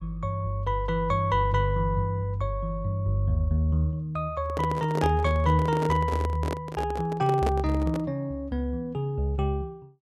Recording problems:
handling noise; from 4.5 to 8 s; peak +1 dB vs average level

